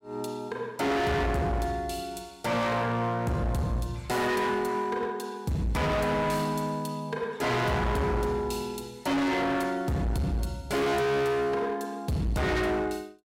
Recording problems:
distortion; hard clipping, signal-to-distortion ratio 6 dB

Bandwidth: 16 kHz